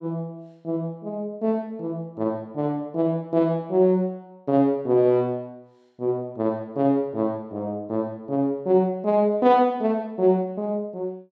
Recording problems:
none

